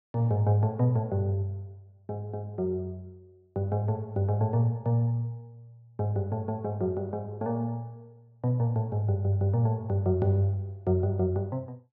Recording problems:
low-pass filter; nothing above 7.4 kHz

